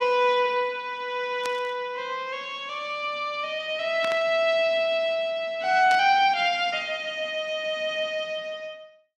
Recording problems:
burst of static; at 1.5 s, at 4 s and at 6 s; peak -5 dB vs average level

